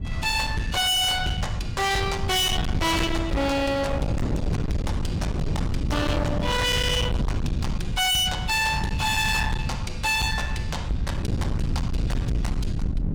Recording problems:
distorted audio; hard clipping, signal-to-distortion ratio 6 dB
low-frequency rumble; below 180 Hz, SNR 5 dB
wind on the microphone; below 200 Hz, SNR 9 dB

